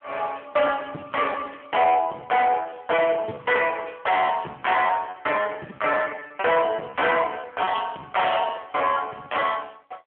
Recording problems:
phone line; 260 Hz to 3.3 kHz, AMR-NB
distortion; hard clipping, signal-to-distortion ratio 11 dB
packet loss; 13% of the sound replaced, filled with repeated pitch periods

